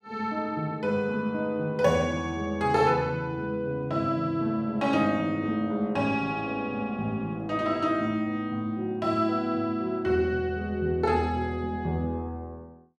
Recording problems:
none

